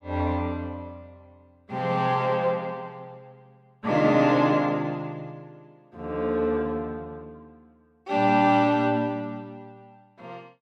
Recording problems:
none

